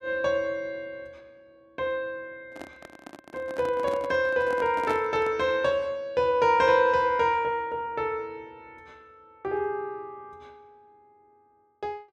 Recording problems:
handling noise; from 2.5 to 5.5 s; peak -4 dB vs average level

